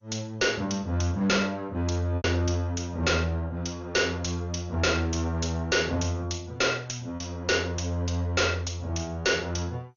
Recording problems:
codec artefacts; MP2, log-spectral distance 5 dB, nothing above 6.7 kHz
distortion; hard clipping, uneven, signal-to-distortion ratio 5 dB
packet loss; 1.2% of the sound replaced, filled with repeated pitch periods

